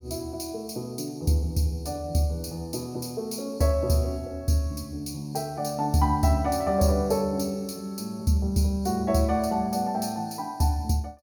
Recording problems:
none

